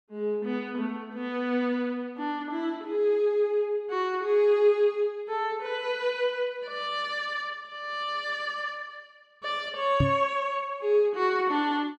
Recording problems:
microphone bump; at 10 s; peak +6 dB vs average level

